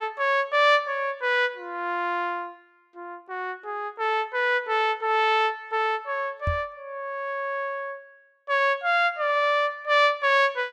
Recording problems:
microphone bump; at 6.5 s; peak -1 dB vs average level

